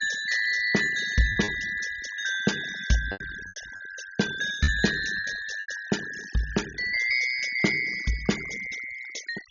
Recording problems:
treble missing; nothing above 6.9 kHz
denoising artefacts; signal-to-artefact ratio 14 dB
lost packets; 5% of the sound replaced, filled with repeated pitch periods

